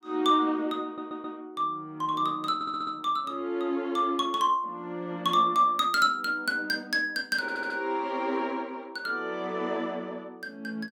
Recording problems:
stutter; at 1 s, at 2.5 s and at 7.5 s

